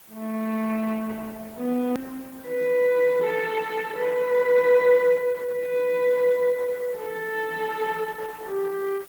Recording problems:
lossy codec; Opus, log-spectral distance 5 dB, nothing above 19.5 kHz
background hiss; slope -2 dB per octave, SNR 23 dB
click at an edit; at 2 s

